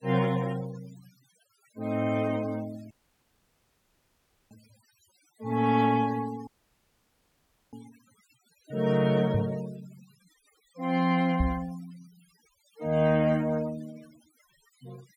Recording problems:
denoising artefacts; signal-to-artefact ratio 20 dB
audio cutting out; at 3 s for 1.5 s and at 6.5 s for 1.5 s
microphone bump; at 9.5 s and at 11 s; peak +3 dB vs average level

